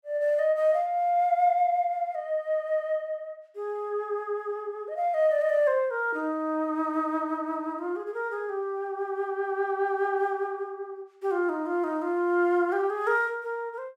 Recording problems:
none

